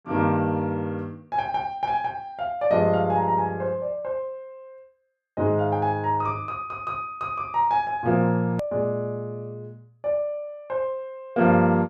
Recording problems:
hard cut with a click; at 8.5 s

